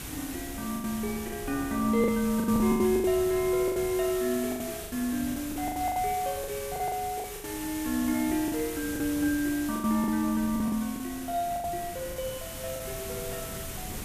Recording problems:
background hiss; slope 0 dB per octave, SNR 10 dB
wind on the microphone; below 300 Hz, SNR 14 dB
packet loss; 12% of the sound replaced, filled with the last packet

